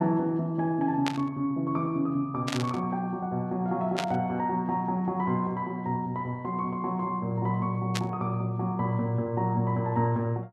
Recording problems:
burst of static; 4 times, first at 1 s; peak +2 dB vs average level

